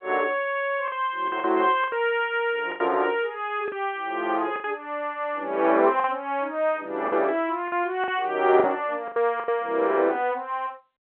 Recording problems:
phone line; 280 Hz to 3.4 kHz, G.711
packet loss; 7% of the sound replaced, filled with the last packet

